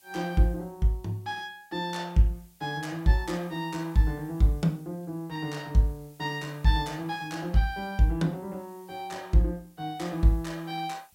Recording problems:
background hiss; SNR 29 dB

